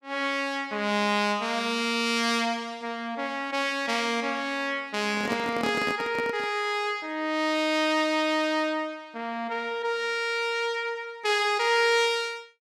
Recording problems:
handling noise; from 5 to 6.5 s; peak -1 dB vs average level

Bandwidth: 15 kHz